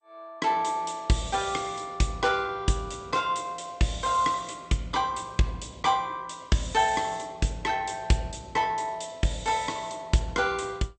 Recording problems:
codec artefacts; MP2, log-spectral distance 5 dB, nothing above 8.5 kHz

